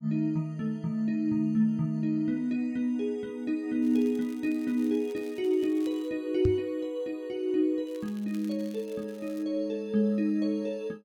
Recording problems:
crackling; from 4 to 6 s and from 8 to 9.5 s; loose cable, SNR 26 dB
knock on the microphone; at 6.5 s; peak +4 dB vs average level

